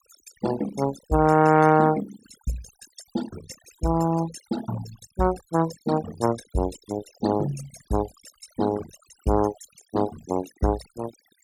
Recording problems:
noise reduction artefacts; signal-to-artefact ratio 13 dB

